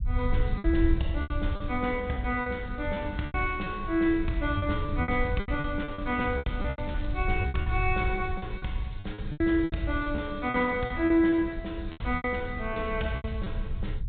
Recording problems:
treble missing; nothing above 4 kHz
low-frequency rumble; below 84 Hz, SNR 6 dB
lost packets; 13% of the sound replaced, filled with repeated pitch periods
crackle; at 6.5 s; loose cable, SNR 27 dB

